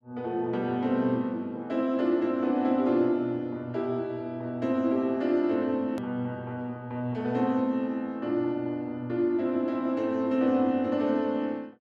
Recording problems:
hard cut with a click; at 6 s

